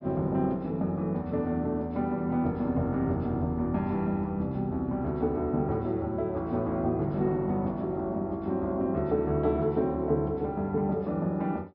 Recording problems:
low-pass filter; nothing above 5.5 kHz

